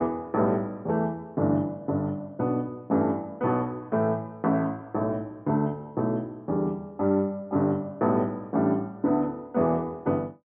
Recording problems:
treble cut off; nothing above 3.4 kHz

